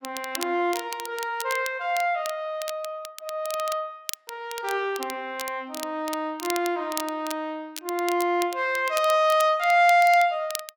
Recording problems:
crackling; vinyl, SNR 13 dB

